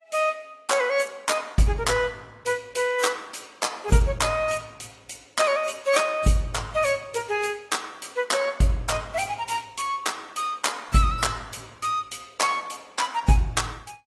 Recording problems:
codec artefacts; AAC, log-spectral distance 5 dB, nothing above 11.6 kHz

